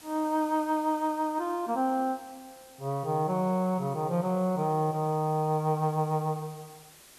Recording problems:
background hiss; slope -1 dB per octave, SNR 23 dB

